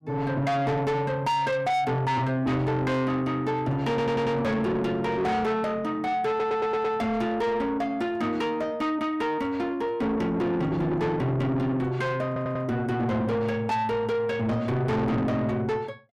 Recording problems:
distortion; soft clipping, signal-to-distortion ratio 8 dB
stutter; at 4 s, at 6.5 s and at 12 s

